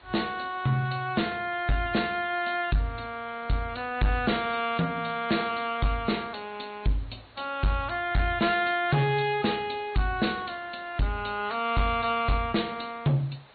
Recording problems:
treble missing; nothing above 4.4 kHz
codec artefacts; MP3, log-spectral distance 7 dB
distorted audio; soft clipping, signal-to-distortion ratio 12 dB
hiss; SNR 25 dB

